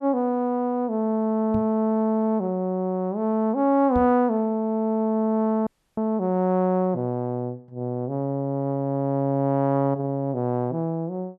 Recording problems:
microphone bump; at 1.5 s and at 4 s; peak -3 dB vs average level
audio cutting out; at 5.5 s

